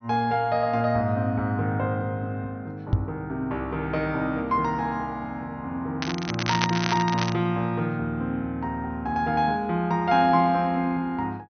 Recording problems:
treble missing; nothing above 6.2 kHz
knock on the microphone; at 3 s; peak +7 dB vs average level
crackling; from 6 to 7.5 s; loose cable, SNR 5 dB

